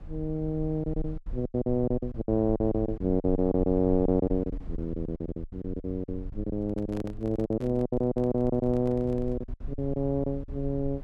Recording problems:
rumble; below 60 Hz, SNR 13 dB
packet loss; 16% of the sound replaced, filled with silence
handling noise; from 6.5 to 9.5 s; peak -10 dB vs average level

